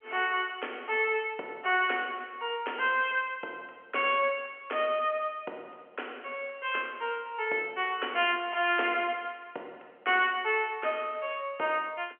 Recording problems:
telephone audio; 320 Hz to 3.2 kHz, G.711

